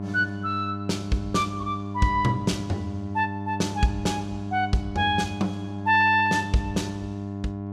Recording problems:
mains hum; 50 Hz, harmonics up to 1.1 kHz, SNR 7 dB

